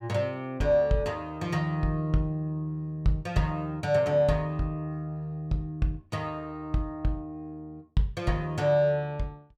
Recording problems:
none

